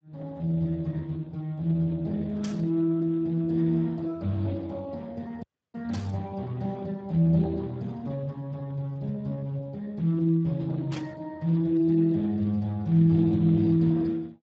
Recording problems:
codec artefacts; Speex, log-spectral distance 2 dB
static burst; at 2.5 s, at 6 s and at 11 s; peak -10 dB vs average level
dropout; at 5.5 s

